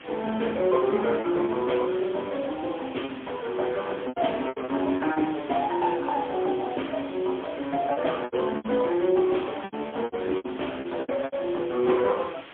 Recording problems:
telephone audio; 240 Hz to 3.4 kHz, AMR-NB, then MP3
background hiss; SNR 17 dB
lost packets; 9% of the sound replaced, filled with repeated pitch periods

